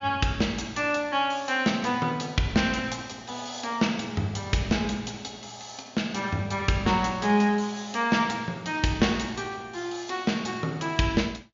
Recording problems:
low-pass filter; nothing above 7.1 kHz

